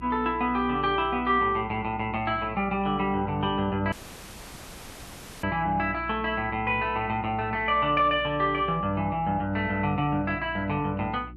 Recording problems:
hum; 60 Hz, harmonics up to 360 Hz, SNR 17 dB
audio cutting out; at 4 s for 1.5 s

